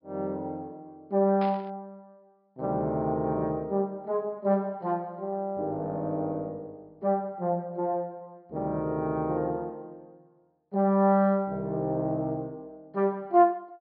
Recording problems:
treble missing; nothing above 5.5 kHz
static burst; at 1.5 s; peak -9 dB vs average level

